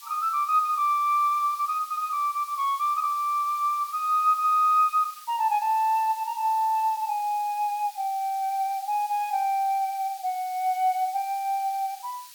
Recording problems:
background hiss; slope +6 dB per octave, SNR 19 dB

